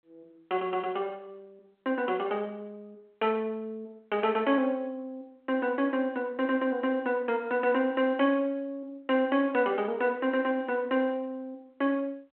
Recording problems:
phone line; 300 Hz to 3.9 kHz, G.726

